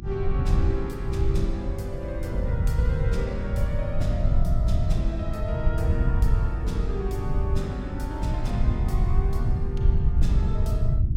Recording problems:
hum; 50 Hz, harmonics up to 350 Hz, SNR 3 dB
rumble; below 98 Hz, SNR -6 dB
wind on the microphone; below 110 Hz, SNR 8 dB

